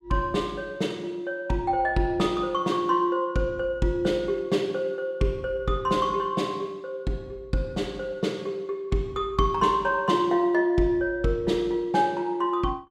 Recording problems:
none

